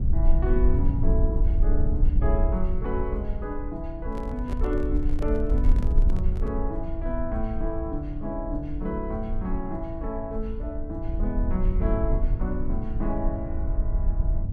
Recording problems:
low-frequency rumble; below 58 Hz, SNR -3 dB
handling noise; from 4 to 6.5 s; peak -3 dB vs average level

